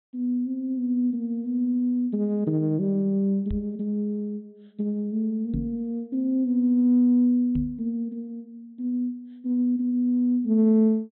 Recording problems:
treble cut off; nothing above 4.1 kHz
microphone thump; at 3.5 s, at 5.5 s and at 7.5 s; peak -2 dB vs average level

